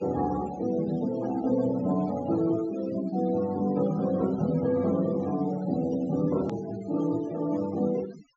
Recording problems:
treble cut off; nothing above 8 kHz
noise reduction artefacts; signal-to-artefact ratio 17 dB
click at an edit; at 6.5 s

